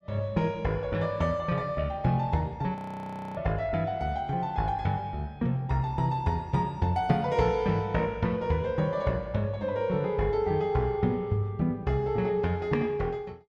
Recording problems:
frozen audio; at 3 s for 0.5 s

